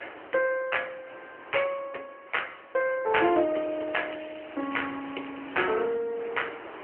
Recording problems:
phone line; 260 Hz to 3.1 kHz, AMR-NB
wind noise; below 1.8 kHz, SNR 16 dB
crackling; from 3 to 5.5 s; loose cable, SNR 19 dB

